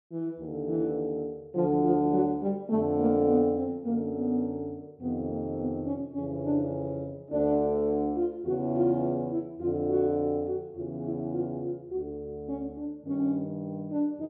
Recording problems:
none

